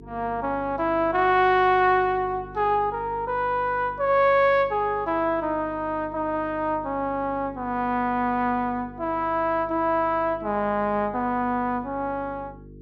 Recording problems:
hum; 50 Hz, harmonics up to 450 Hz, SNR 20 dB

